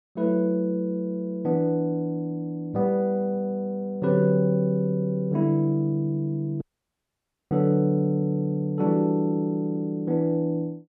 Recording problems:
audio cutting out; at 6.5 s for 1 s

